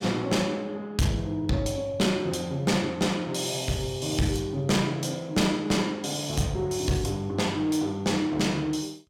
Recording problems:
distortion; hard clipping, uneven, signal-to-distortion ratio 11 dB

